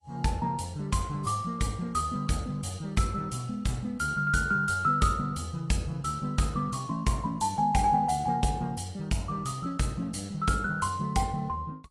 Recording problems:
codec artefacts; AAC, log-spectral distance 3 dB

